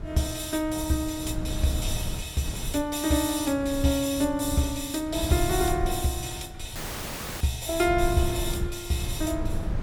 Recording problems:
wind noise; below 130 Hz, SNR 8 dB
audio cutting out; at 7 s for 0.5 s

